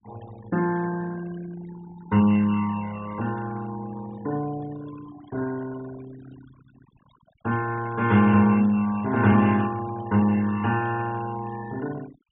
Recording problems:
low-pass filter; nothing above 4 kHz
noise reduction artefacts; signal-to-artefact ratio 18 dB

